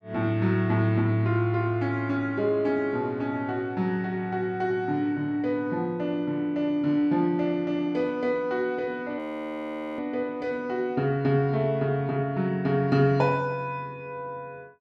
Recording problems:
frozen audio; at 9 s for 1 s

